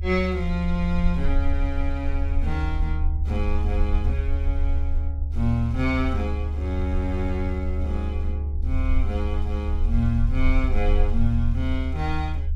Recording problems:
rumble; below 74 Hz, SNR -2 dB

